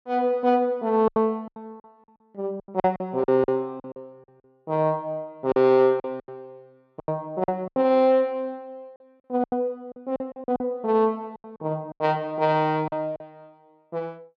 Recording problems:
lost packets; 12% of the sound replaced, filled with silence

